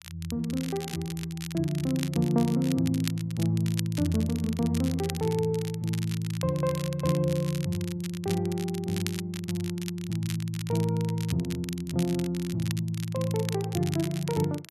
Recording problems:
crackling; vinyl, SNR 12 dB

